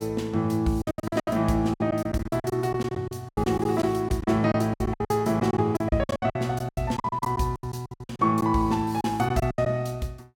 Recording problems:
lost packets; 18% of the sound replaced, filled with silence

